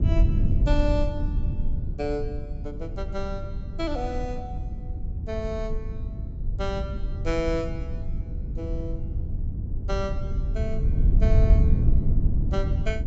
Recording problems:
treble cut off; nothing above 7.7 kHz
rumble; below 88 Hz, SNR -5 dB

